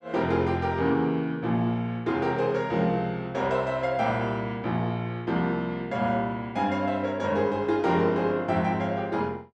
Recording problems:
none

